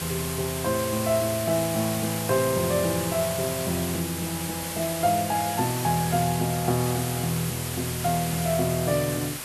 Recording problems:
hiss; slope -1 dB per octave, SNR 5 dB

